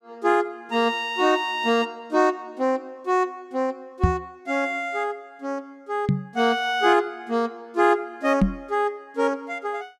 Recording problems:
microphone bump; at 4 s, at 6 s and at 8.5 s; peak +9 dB vs average level

